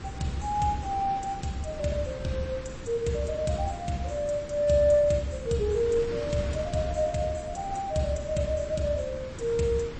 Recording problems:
codec artefacts; MP3, log-spectral distance 3 dB, nothing above 8.2 kHz
wind noise; below 520 Hz, SNR 12 dB

